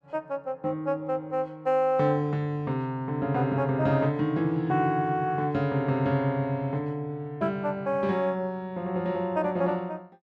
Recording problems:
none

